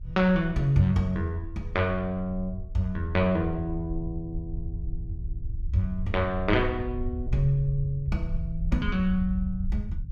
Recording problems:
rumble; below 76 Hz, SNR 8 dB

